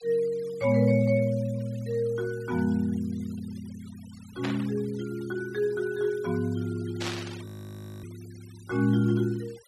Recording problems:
noise reduction artefacts; signal-to-artefact ratio 23 dB
burst of static; at 4.5 s and at 7 s; peak -2 dB vs average level
audio freezing; at 7.5 s for 0.5 s

